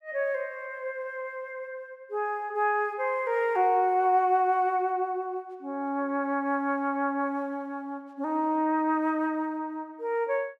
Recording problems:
none

